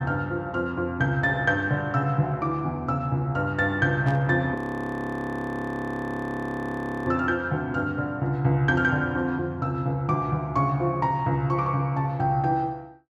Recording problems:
static burst; at 4 s; peak -14 dB vs average level
frozen audio; at 4.5 s for 2.5 s

